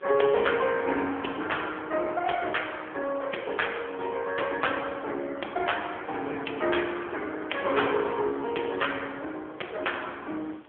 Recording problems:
phone line; 280 Hz to 3.4 kHz, AMR-NB
hiss; SNR 25 dB

